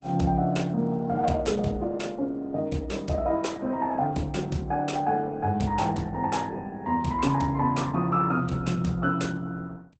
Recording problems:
codec artefacts; Opus, log-spectral distance 3 dB, nothing above 8 kHz

